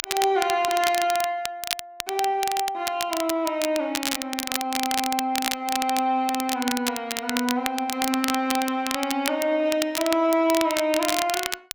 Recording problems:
crackle; vinyl, SNR 5 dB

